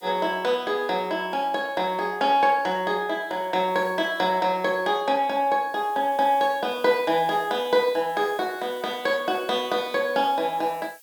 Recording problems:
background hiss; slope +5 dB per octave, SNR 26 dB

